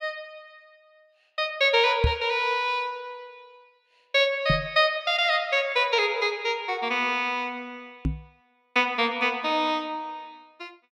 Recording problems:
microphone bump; at 2 s, at 4.5 s and at 8 s; peak +4 dB vs average level

